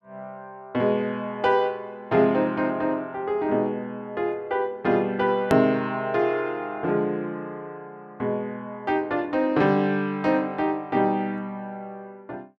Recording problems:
click at an edit; at 5.5 s

